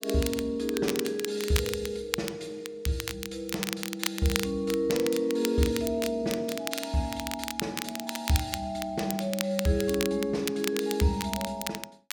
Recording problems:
crackling; vinyl, SNR 6 dB

